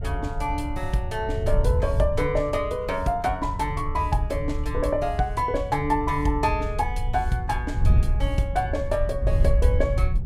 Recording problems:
wind noise; below 84 Hz, SNR 2 dB

